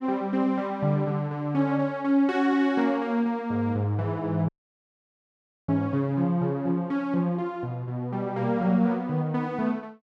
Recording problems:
audio cutting out; at 4.5 s for 1 s

